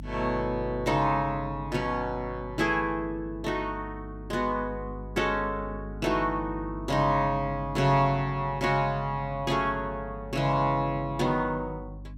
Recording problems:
electrical hum; 50 Hz, harmonics up to 300 Hz, SNR 13 dB

